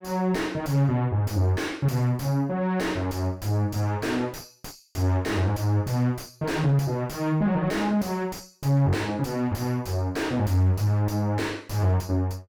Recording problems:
distortion; soft clipping, signal-to-distortion ratio 5 dB

